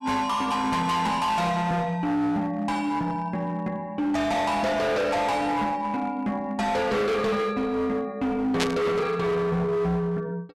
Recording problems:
distortion; hard clipping, signal-to-distortion ratio 8 dB
burst of static; at 8.5 s; peak +3 dB vs average level

